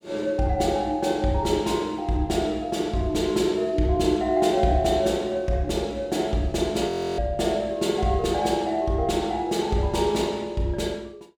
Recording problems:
audio freezing; at 7 s

